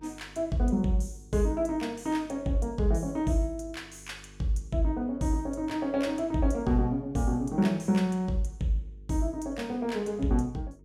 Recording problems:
mains hum; 50 Hz, harmonics up to 450 Hz, SNR 24 dB

